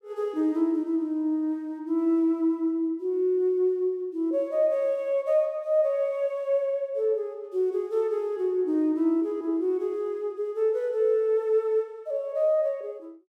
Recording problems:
none

